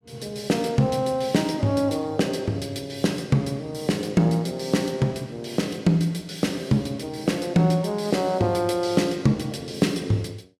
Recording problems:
none

